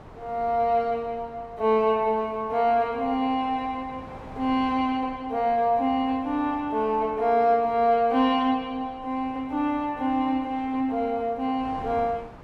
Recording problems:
wind on the microphone; below 910 Hz, SNR 21 dB

